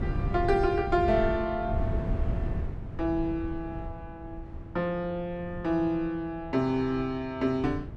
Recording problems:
wind on the microphone; below 140 Hz, SNR 7 dB

